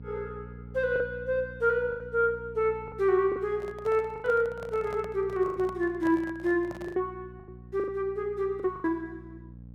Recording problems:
hum; 60 Hz, harmonics up to 540 Hz, SNR 18 dB
packet loss; 8% of the sound replaced, filled with the last packet
handling noise; from 3.5 to 7 s; peak -9 dB vs average level

